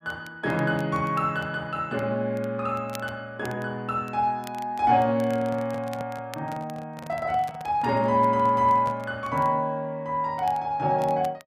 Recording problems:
crackle; vinyl, SNR 25 dB
handling noise; from 5 to 9 s; peak -8 dB vs average level

